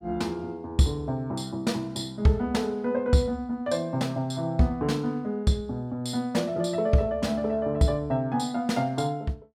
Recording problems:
none

